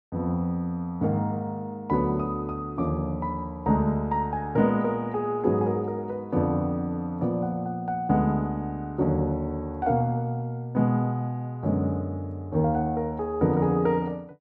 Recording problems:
none

